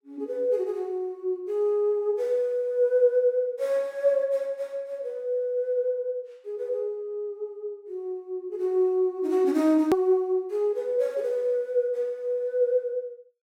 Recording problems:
hard cut with a click; at 10 s

